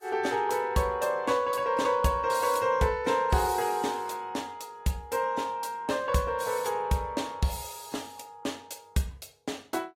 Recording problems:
codec artefacts; AAC, log-spectral distance 3 dB, nothing above 16 kHz

